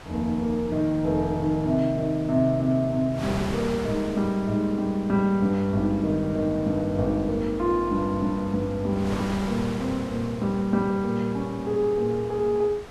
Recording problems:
wind on the microphone; below 1.5 kHz, SNR 14 dB

